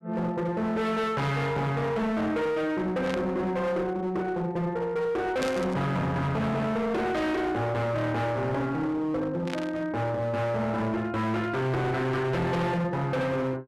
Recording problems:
distortion; hard clipping, signal-to-distortion ratio 7 dB
burst of static; at 3 s, at 5.5 s and at 9.5 s; peak -4 dB vs average level

